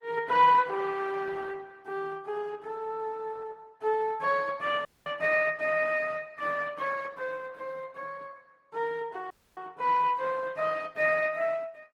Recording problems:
lossy codec; Opus, then Opus, log-spectral distance 3 dB
dropout; at 5 s and at 9.5 s

